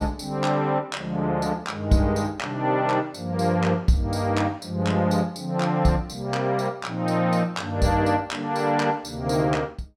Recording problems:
none

